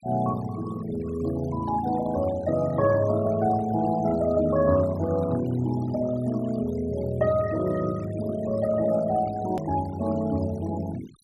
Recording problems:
denoising artefacts; signal-to-artefact ratio 18 dB
edit click; at 9.5 s

